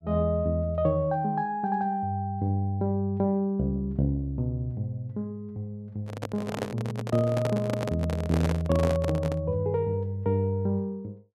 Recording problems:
microphone handling noise; from 6 to 9.5 s; peak +1 dB vs average level

